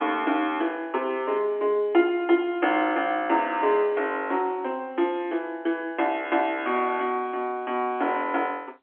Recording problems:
telephone audio; 260 Hz to 3.4 kHz, G.711

